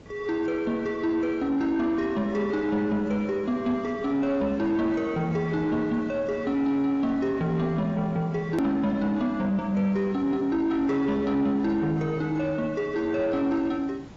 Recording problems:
codec artefacts; AAC, log-spectral distance 2 dB, nothing above 13.1 kHz
distortion; soft clipping, signal-to-distortion ratio 11 dB
hiss; slope -6 dB per octave, SNR 21 dB
hard cut with a click; at 8.5 s

